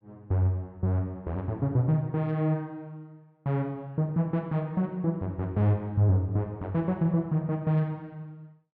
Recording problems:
none

